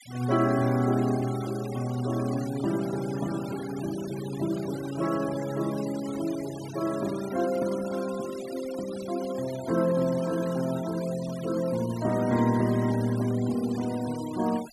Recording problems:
noise reduction artefacts; signal-to-artefact ratio 16 dB

